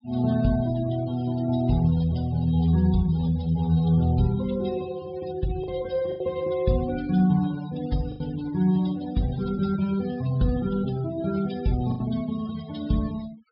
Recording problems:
treble missing; nothing above 5.5 kHz
denoising artefacts; signal-to-artefact ratio 19 dB
lost packets; 2% of the sound replaced, filled with the last packet

